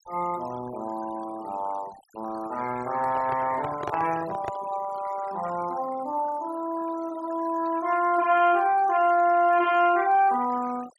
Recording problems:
noise reduction artefacts; signal-to-artefact ratio 19 dB
microphone handling noise; from 3 to 4.5 s; peak -2 dB vs average level

